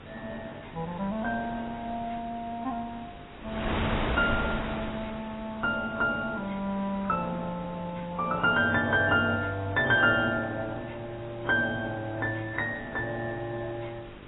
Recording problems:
lossy codec; AAC, log-spectral distance 13 dB, nothing above 3.2 kHz
electrical hum; 50 Hz, harmonics up to 2 kHz, SNR 22 dB
hiss; SNR 27 dB
wind on the microphone; below 1.5 kHz, SNR 11 dB

